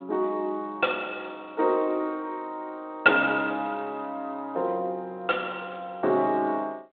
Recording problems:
phone line; 280 Hz to 3.6 kHz, G.726

